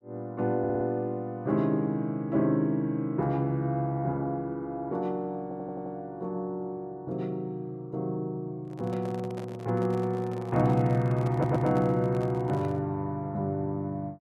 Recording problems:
audio stuttering; at 0.5 s, at 5.5 s and at 11 s
microphone handling noise; from 8.5 to 13 s; peak -8 dB vs average level

